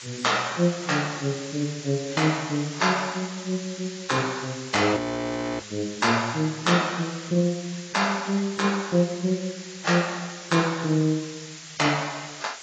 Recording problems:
lossy codec; AAC, log-spectral distance 18 dB
background hiss; slope +3 dB per octave, SNR 13 dB
audio freezing; at 5 s for 0.5 s

